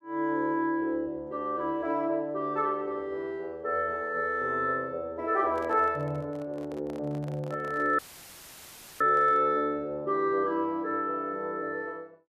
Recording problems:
handling noise; from 5.5 to 9.5 s; peak -11 dB vs average level
dropout; at 8 s for 1 s; filled with static

